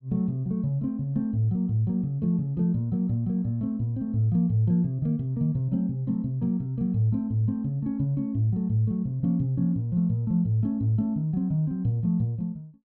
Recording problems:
none

